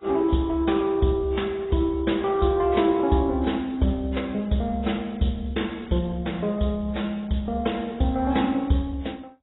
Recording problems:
codec artefacts; MP2, then AAC, log-spectral distance 4 dB, nothing above 3.8 kHz

